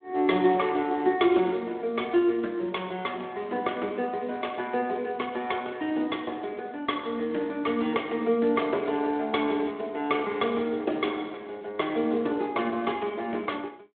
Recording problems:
phone line; 260 Hz to 3.5 kHz, Speex

